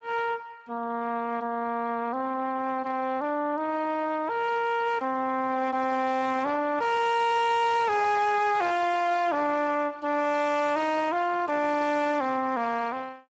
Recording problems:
codec artefacts; Speex, log-spectral distance 4 dB, nothing above 7.3 kHz
distorted audio; soft clipping, signal-to-distortion ratio 10 dB

